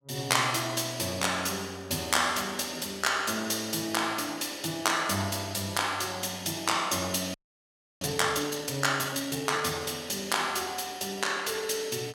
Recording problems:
frozen audio; at 7.5 s for 0.5 s

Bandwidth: 17 kHz